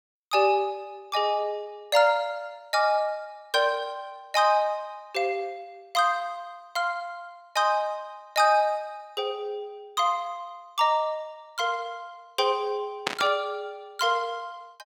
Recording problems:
burst of static; at 13 s; peak +4 dB vs average level

